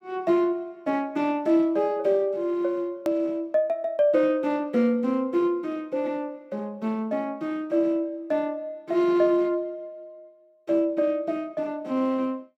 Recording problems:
hard cut with a click; at 3 s

